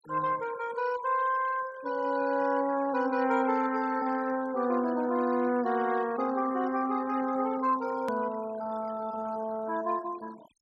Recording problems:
noise reduction artefacts; signal-to-artefact ratio 19 dB
edit click; at 8 s

